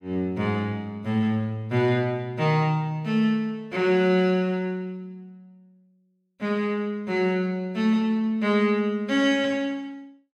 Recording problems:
none

